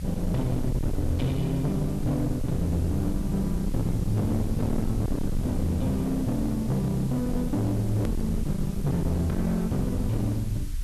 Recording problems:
distortion; hard clipping, signal-to-distortion ratio 7 dB
background hiss; SNR 21 dB
rumble; below 110 Hz, SNR 7 dB
hard cut with a click; at 8 s

